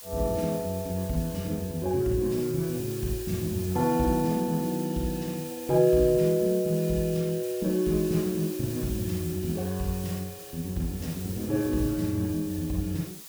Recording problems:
background hiss; slope +2 dB per octave, SNR 13 dB

